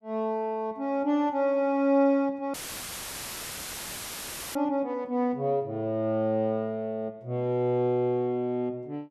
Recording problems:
dropout; at 2.5 s for 2 s; filled with static

